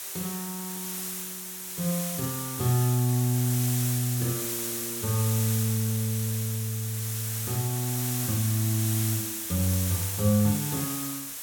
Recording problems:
hiss; slope +1 dB per octave, SNR 3 dB

